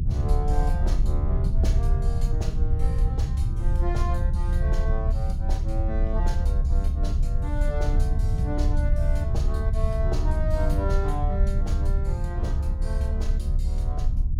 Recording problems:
rumble; below 72 Hz, strongest tone 32 Hz, SNR -9 dB

